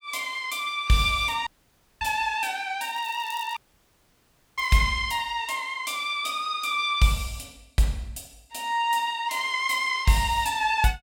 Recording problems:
audio cutting out; at 1.5 s for 0.5 s and at 3.5 s for 1 s
crackling; from 3 to 5 s; loose cable, SNR 22 dB

